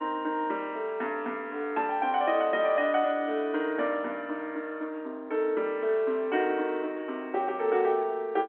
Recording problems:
phone line; 260 Hz to 3.6 kHz, G.711

